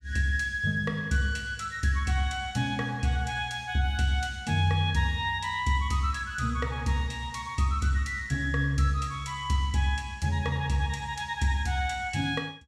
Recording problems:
none

